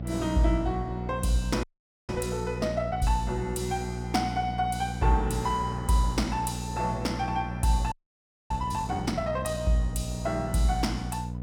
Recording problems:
hum; 60 Hz, harmonics up to 720 Hz, SNR 6 dB
wind noise; below 620 Hz, SNR 22 dB
audio freezing; at 1.5 s and at 8 s for 0.5 s

